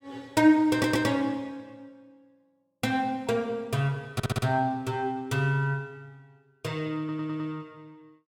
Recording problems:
stutter; at 0.5 s, at 4 s and at 7 s

